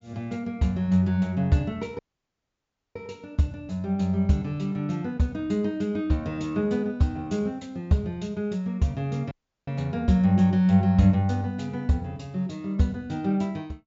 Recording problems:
low-pass filter; nothing above 7.5 kHz
dropout; at 2 s for 1 s and at 9.5 s

